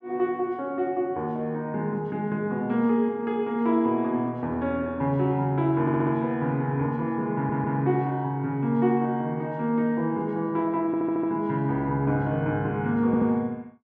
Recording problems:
stutter; 4 times, first at 6 s

